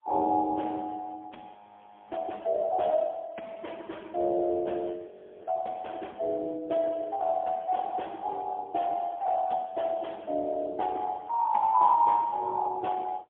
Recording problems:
phone line; 220 Hz to 3.4 kHz, AMR-NB, then MP3
audio freezing; at 1.5 s for 0.5 s and at 5 s

